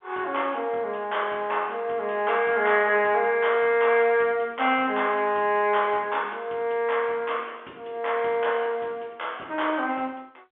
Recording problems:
phone line; 220 Hz to 3.5 kHz, G.711

